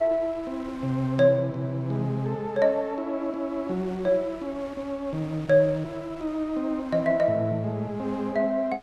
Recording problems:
wind noise; below 2.3 kHz, SNR 23 dB

